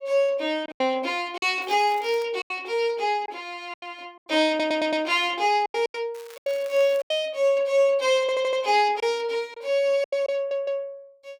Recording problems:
lost packets; 8% of the sound replaced, filled with silence
crackle; at 1.5 s and at 6 s; loose cable, SNR 24 dB
audio stuttering; at 4.5 s, at 8 s and at 10 s

